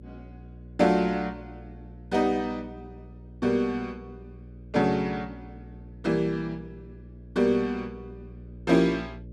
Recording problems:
hum; 60 Hz, harmonics up to 600 Hz, SNR 19 dB

